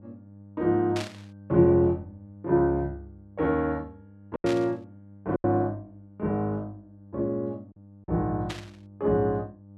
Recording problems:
mains hum; 50 Hz, harmonics up to 600 Hz, SNR 22 dB
lost packets; 3% of the sound replaced, filled with silence
static burst; at 1 s, at 4.5 s and at 8.5 s; peak -5 dB vs average level

